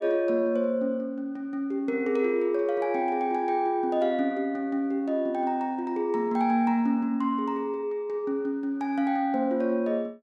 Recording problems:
none

